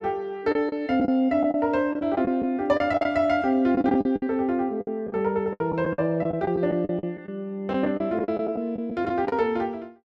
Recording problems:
lost packets; 12% of the sound replaced, filled with the last packet

